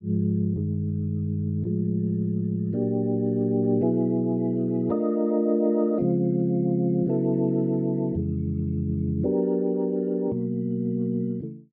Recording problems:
treble missing; nothing above 8 kHz

